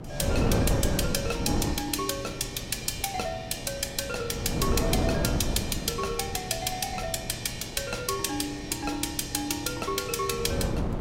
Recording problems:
electrical hum; 60 Hz, harmonics up to 840 Hz, SNR 19 dB
wind on the microphone; below 340 Hz, SNR 3 dB

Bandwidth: 16 kHz